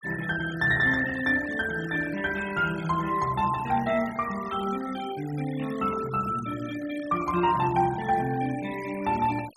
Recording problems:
denoising artefacts; signal-to-artefact ratio 17 dB

